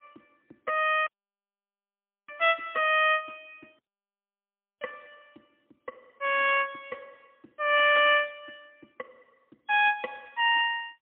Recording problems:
telephone audio; 260 Hz to 3.5 kHz, AMR-NB, then MP3
audio cutting out; at 1 s for 1 s and at 4 s for 1 s

